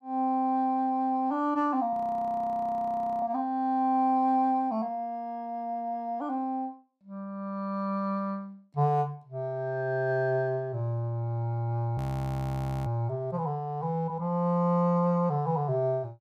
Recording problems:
audio freezing; at 2 s for 1.5 s and at 12 s for 1 s

